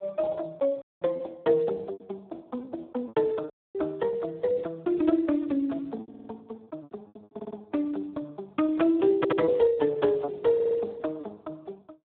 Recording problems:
telephone audio; 190 Hz to 3.6 kHz, Speex
packet loss; 8% of the sound replaced, filled with repeated pitch periods
dropout; at 1 s and at 3.5 s
audio stuttering; 4 times, first at 6 s

